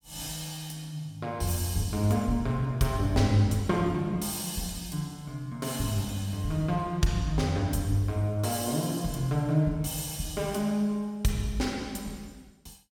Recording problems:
none

